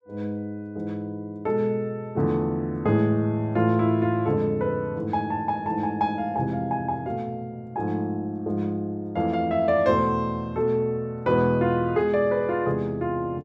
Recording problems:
none

